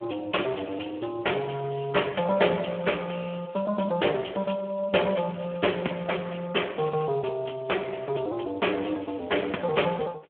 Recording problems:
telephone audio; 260 Hz to 3.3 kHz, Speex

